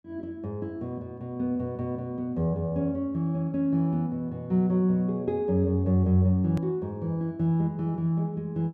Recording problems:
hard cut with a click; at 6.5 s

